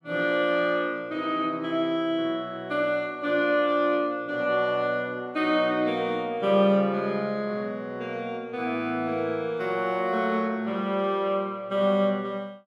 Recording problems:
none

